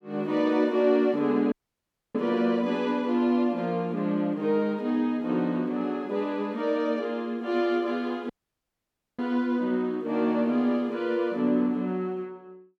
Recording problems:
audio cutting out; at 1.5 s for 0.5 s and at 8.5 s for 1 s

